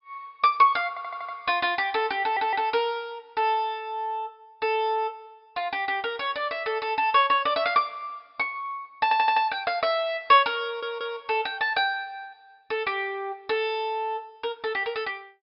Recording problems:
treble cut off; nothing above 5.5 kHz
audio stuttering; 4 times, first at 1 s

